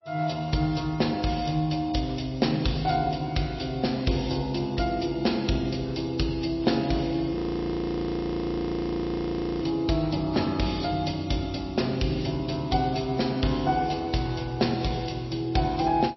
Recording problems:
codec artefacts; MP3, log-spectral distance 5 dB, nothing above 5.7 kHz
audio freezing; at 7.5 s for 2.5 s

